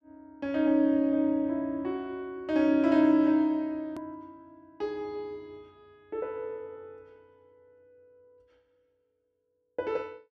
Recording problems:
click at an edit; at 4 s

